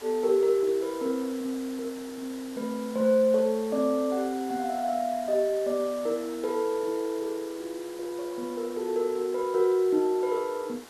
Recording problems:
hiss; slope -3 dB per octave, SNR 18 dB

